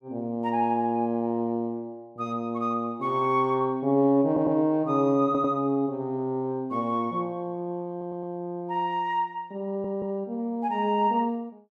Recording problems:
audio stuttering; 4 times, first at 4.5 s

